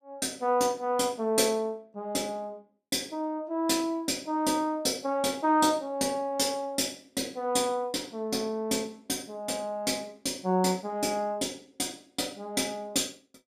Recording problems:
none

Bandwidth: 15 kHz